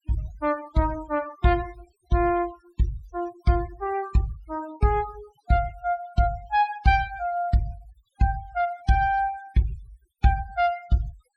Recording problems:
denoising artefacts; signal-to-artefact ratio 20 dB

